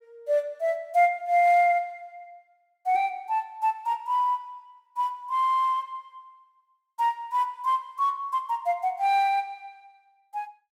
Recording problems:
none

